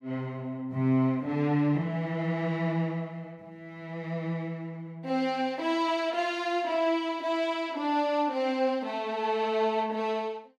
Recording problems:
none

